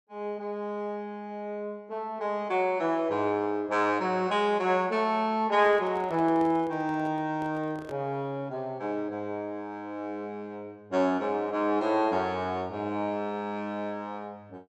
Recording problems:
microphone handling noise; from 5.5 to 8 s; peak -9 dB vs average level

